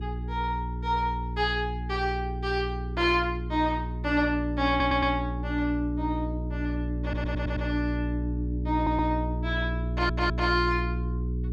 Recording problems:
hum; 60 Hz, harmonics up to 420 Hz, SNR 3 dB
stutter; 4 times, first at 4.5 s

